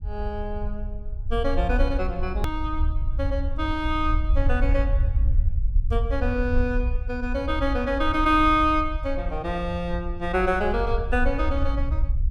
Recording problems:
low-frequency rumble; below 66 Hz, SNR 2 dB
click at an edit; at 2.5 s

